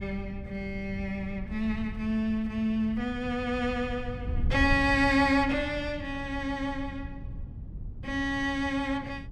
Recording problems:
wind noise; below 110 Hz, SNR 10 dB

